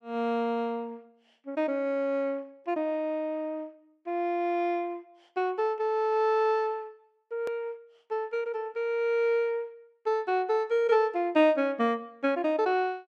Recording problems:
click at an edit; at 7.5 s

